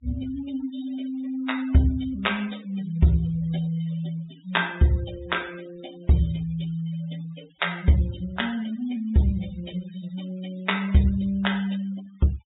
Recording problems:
treble cut off; nothing above 4 kHz
noise reduction artefacts; signal-to-artefact ratio 20 dB

